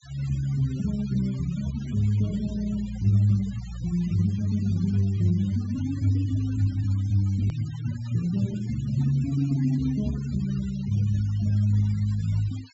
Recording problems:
treble cut off; nothing above 8 kHz
denoising artefacts; signal-to-artefact ratio 23 dB
edit click; at 7.5 s

